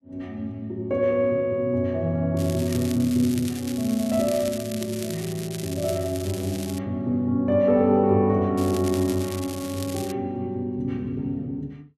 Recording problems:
crackling; from 2.5 to 7 s and from 8.5 to 10 s; loose cable, SNR 13 dB

